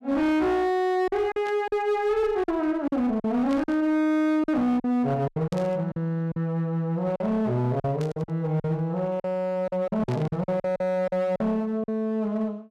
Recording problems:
distortion; hard clipping, uneven, signal-to-distortion ratio 11 dB
lost packets; 10% of the sound replaced, filled with silence
static burst; 5 times, first at 1.5 s; peak -12 dB vs average level

